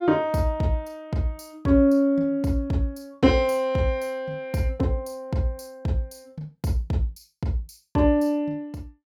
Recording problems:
none

